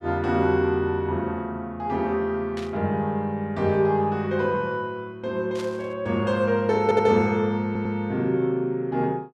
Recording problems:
static burst; at 2.5 s and at 5.5 s; peak -10 dB vs average level
stutter; at 7 s and at 7.5 s

